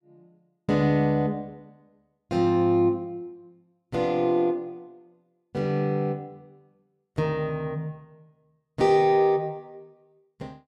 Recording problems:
none

